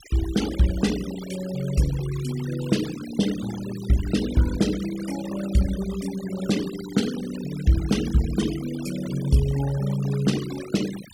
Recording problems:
denoising artefacts; signal-to-artefact ratio 13 dB

